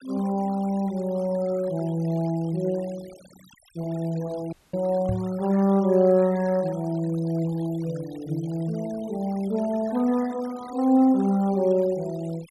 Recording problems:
noise reduction artefacts; signal-to-artefact ratio 23 dB
audio cutting out; at 4.5 s
microphone thump; at 5 s; peak -1 dB vs average level

